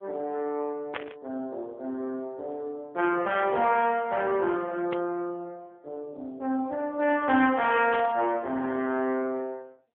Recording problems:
phone line; 220 Hz to 3.3 kHz, AMR-NB
static burst; at 1 s, at 5 s and at 8 s; peak 0 dB vs average level

